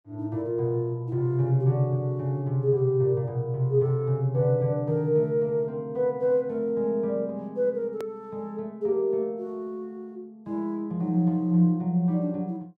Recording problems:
edit click; at 8 s

